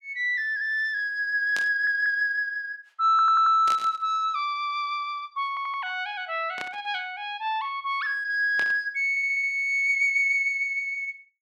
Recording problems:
burst of static; 4 times, first at 1.5 s; peak -6 dB vs average level
stutter; 4 times, first at 1.5 s

